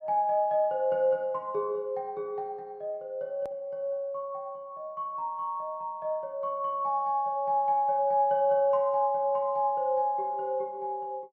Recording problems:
click at an edit; at 3.5 s

